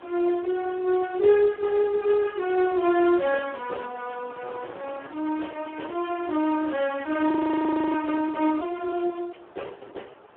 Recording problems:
telephone audio; 280 Hz to 2.9 kHz, Speex
wind noise; below 1.2 kHz, SNR 24 dB
frozen audio; at 7.5 s for 0.5 s

